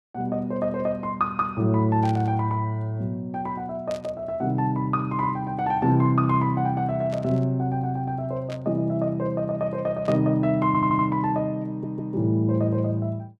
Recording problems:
static burst; 5 times, first at 2 s; peak -12 dB vs average level
stutter; at 11 s and at 12 s

